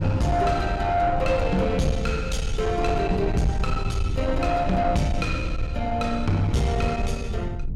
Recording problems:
distortion; soft clipping, signal-to-distortion ratio 11 dB
rumble; below 96 Hz, SNR 7 dB
wind noise; below 130 Hz, SNR 9 dB

